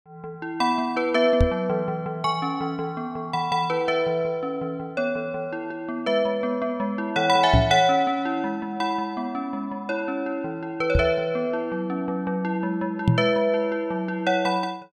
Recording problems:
microphone thump; 4 times, first at 1.5 s; peak +8 dB vs average level

